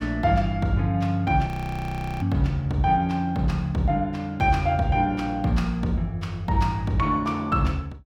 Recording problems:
audio freezing; at 1.5 s for 1 s

